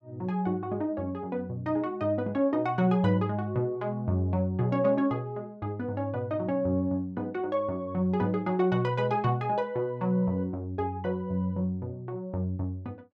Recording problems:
none

